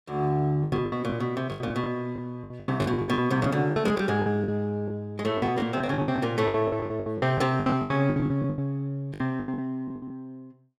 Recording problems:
lost packets; 19% of the sound replaced, filled with the last packet

